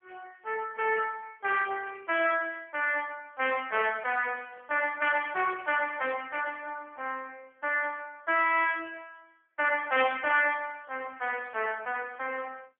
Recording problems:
phone line; 300 Hz to 3.2 kHz, AMR-NB

